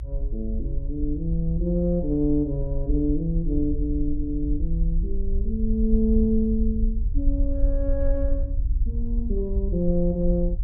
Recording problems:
low-frequency rumble; below 54 Hz, SNR 2 dB

